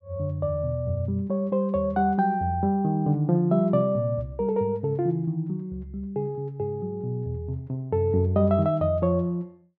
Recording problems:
none

